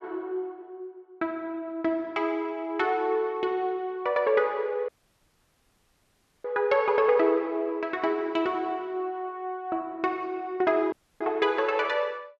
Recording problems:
audio cutting out; at 5 s for 1.5 s and at 11 s

